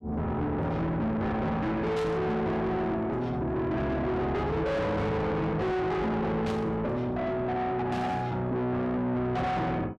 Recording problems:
distorted audio; soft clipping, signal-to-distortion ratio 5 dB
burst of static; at 2 s, at 6.5 s and at 8 s; peak -9 dB vs average level

